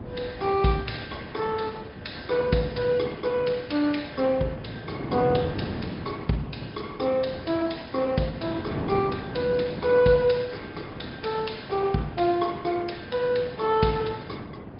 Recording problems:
treble cut off; nothing above 5.2 kHz
lossy codec; Opus, log-spectral distance 4 dB
wind on the microphone; below 400 Hz, SNR 10 dB

